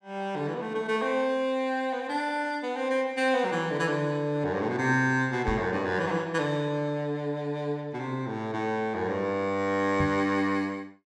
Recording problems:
microphone thump; at 5.5 s and at 10 s; peak +1 dB vs average level

